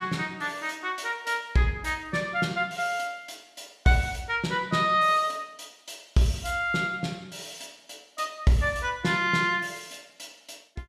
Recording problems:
none

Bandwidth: 14.5 kHz